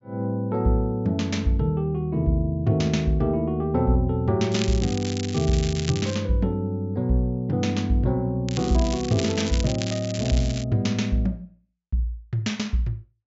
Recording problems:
treble missing; nothing above 8 kHz
crackling; from 4.5 to 6 s and from 8.5 to 11 s; loose cable, SNR 11 dB

